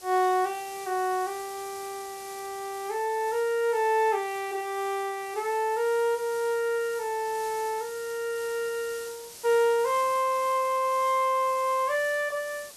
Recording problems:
background hiss; SNR 16 dB

